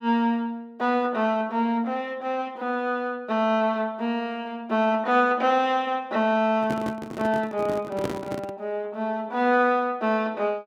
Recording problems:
handling noise; from 6.5 to 8.5 s; peak 0 dB vs average level

